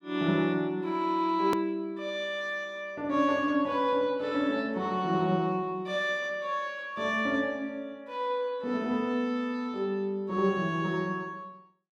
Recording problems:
click at an edit; at 1.5 s

